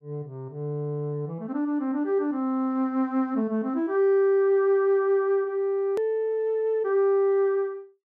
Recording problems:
hard cut with a click; at 6 s

